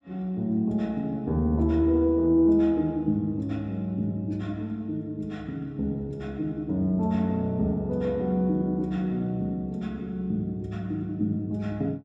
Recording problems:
none

